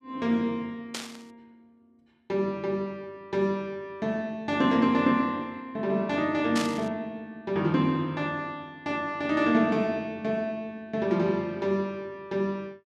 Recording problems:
burst of static; at 1 s and at 6.5 s; peak 0 dB vs average level

